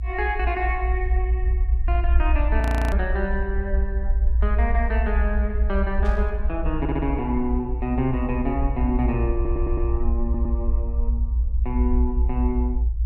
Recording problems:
low-frequency rumble; below 62 Hz, strongest tone 56 Hz, SNR -3 dB
audio freezing; at 2.5 s
static burst; at 6 s; peak -12 dB vs average level
stutter; at 7 s, at 9.5 s and at 10 s

